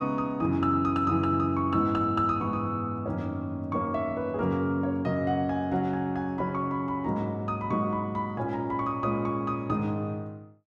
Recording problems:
none

